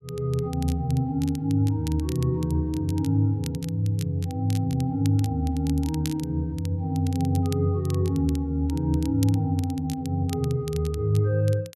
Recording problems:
crackle; vinyl, SNR 19 dB

